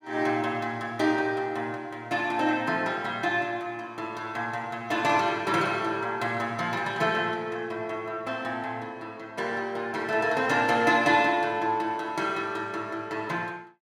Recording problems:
none

